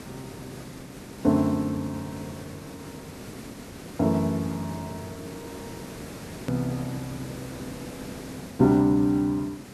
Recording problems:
hiss; slope -5 dB per octave, SNR 14 dB
click at an edit; at 6.5 s

